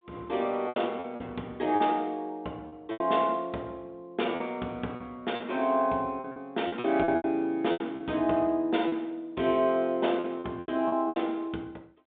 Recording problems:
telephone audio; 190 Hz to 3.7 kHz, G.726
packet loss; 10% of the sound replaced, filled with repeated pitch periods

